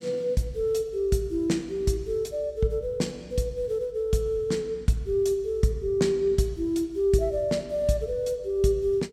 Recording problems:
none

